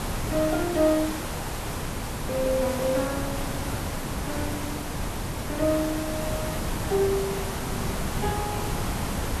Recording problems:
background hiss; slope -4 dB per octave, SNR 5 dB
wind noise; below 210 Hz, SNR 6 dB

